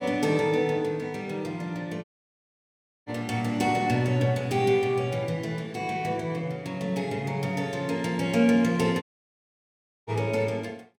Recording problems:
dropout; at 2 s for 1 s and at 9 s for 1 s

